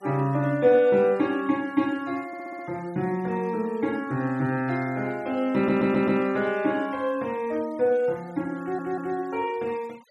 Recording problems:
noise reduction artefacts; signal-to-artefact ratio 26 dB
audio stuttering; at 2.5 s, at 5.5 s and at 8.5 s

